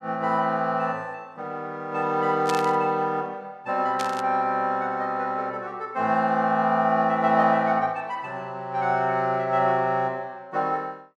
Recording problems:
burst of static; at 2.5 s and at 4 s; peak -3 dB vs average level

